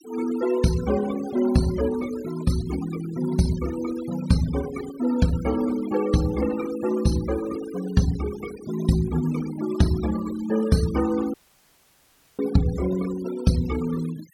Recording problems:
denoising artefacts; signal-to-artefact ratio 15 dB
dropout; at 11 s for 1 s

